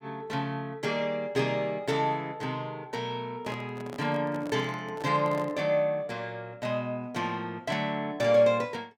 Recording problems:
handling noise; from 3.5 to 5.5 s; peak -7 dB vs average level

